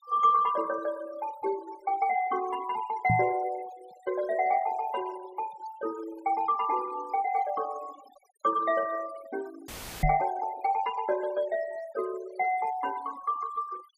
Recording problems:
denoising artefacts; signal-to-artefact ratio 20 dB
microphone bump; at 3 s and at 10 s; peak +5 dB vs average level
audio cutting out; at 9.5 s; filled with static

